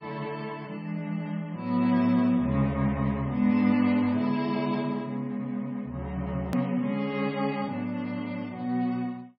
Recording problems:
lossy compression; MP3, log-spectral distance 2 dB, nothing above 16.6 kHz
hard cut with a click; at 6.5 s

